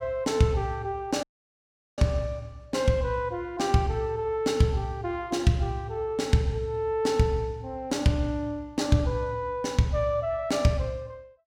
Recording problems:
dropout; at 1 s for 1 s

